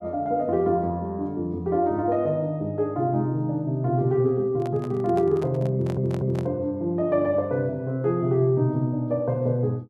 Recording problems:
handling noise; from 4.5 to 6.5 s; peak -9 dB vs average level
stutter; at 5.5 s

